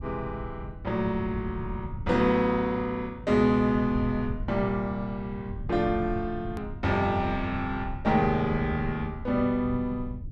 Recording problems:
rumble; below 130 Hz, SNR 11 dB
edit click; at 6.5 s

